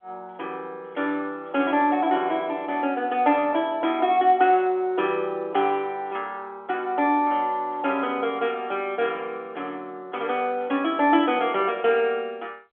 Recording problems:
phone line; 220 Hz to 3.4 kHz, G.711

